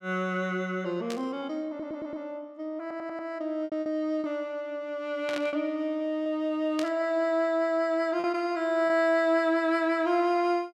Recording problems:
packet loss; 3% of the sound replaced, filled with repeated pitch periods
static burst; at 1 s, at 5.5 s and at 7 s; peak -4 dB vs average level
stutter; at 1.5 s and at 3 s

